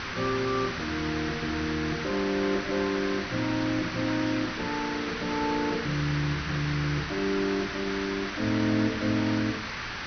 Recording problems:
treble cut off; nothing above 6.1 kHz
hiss; SNR 4 dB

